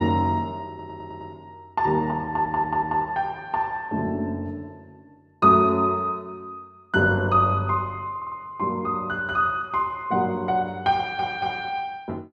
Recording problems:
audio stuttering; 4 times, first at 0.5 s

